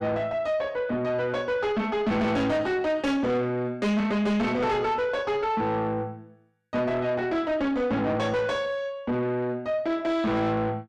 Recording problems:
distortion; soft clipping, signal-to-distortion ratio 7 dB

